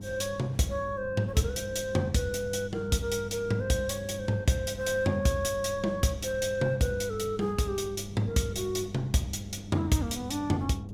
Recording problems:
electrical hum; 50 Hz, harmonics up to 500 Hz, SNR 12 dB
wind noise; below 280 Hz, SNR 18 dB

